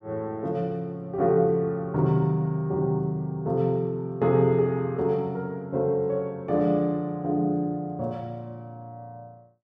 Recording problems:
none

